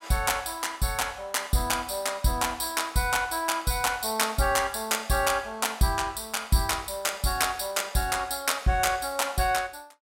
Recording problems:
none

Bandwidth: 16 kHz